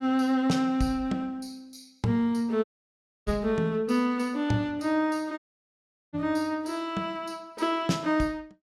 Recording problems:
audio cutting out; at 2.5 s for 0.5 s and at 5.5 s for 1 s

